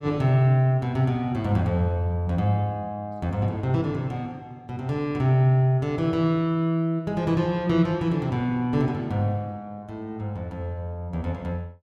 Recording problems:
none

